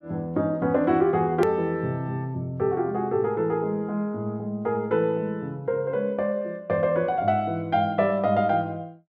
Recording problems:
click at an edit; at 1.5 s

